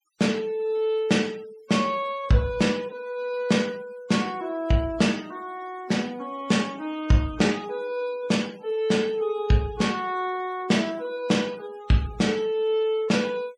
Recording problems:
noise reduction artefacts; signal-to-artefact ratio 24 dB

